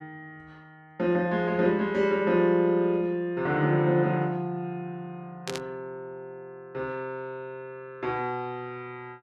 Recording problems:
static burst; at 5.5 s; peak -4 dB vs average level

